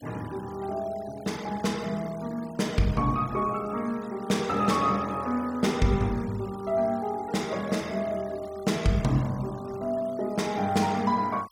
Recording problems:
noise reduction artefacts; signal-to-artefact ratio 20 dB

